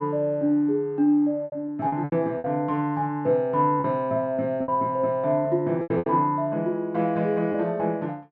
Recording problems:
lost packets; 7% of the sound replaced, filled with repeated pitch periods

